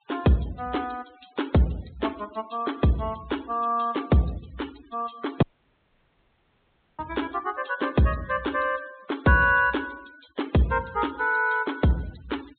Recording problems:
treble missing; nothing above 4 kHz
noise reduction artefacts; signal-to-artefact ratio 22 dB
dropout; at 5.5 s for 1.5 s

